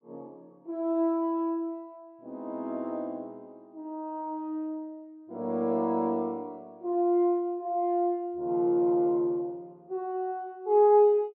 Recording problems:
none

